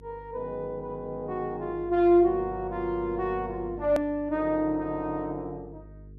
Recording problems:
hum; 50 Hz, harmonics up to 450 Hz, SNR 18 dB
click at an edit; at 4 s

